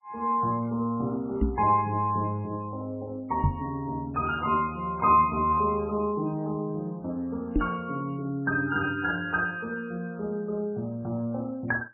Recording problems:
codec artefacts; MP3, log-spectral distance 2 dB, nothing above 2.5 kHz
microphone thump; at 1.5 s, at 3.5 s and at 7.5 s; peak +7 dB vs average level

